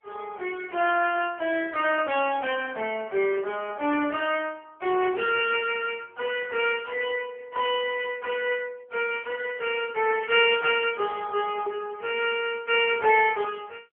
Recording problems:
telephone audio; 300 Hz to 3.2 kHz, AMR-NB

